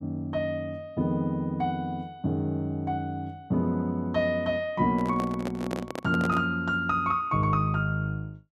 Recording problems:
handling noise; from 5 to 6.5 s; peak -1 dB vs average level

